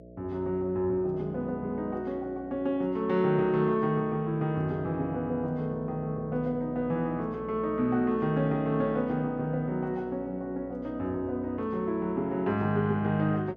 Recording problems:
hum; 60 Hz, harmonics up to 660 Hz, SNR 17 dB

